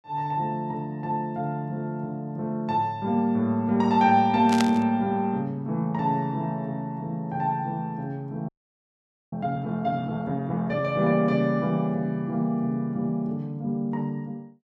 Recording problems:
burst of static; at 4.5 s; peak +2 dB vs average level
frozen audio; at 8.5 s for 1 s

